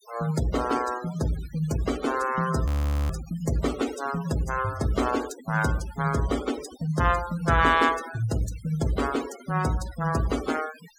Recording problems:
denoising artefacts; signal-to-artefact ratio 14 dB
audio freezing; at 2.5 s

